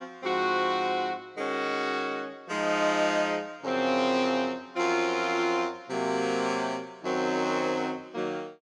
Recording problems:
none

